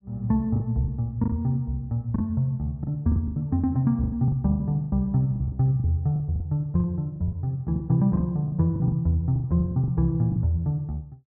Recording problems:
lost packets; 13% of the sound replaced, filled with the last packet

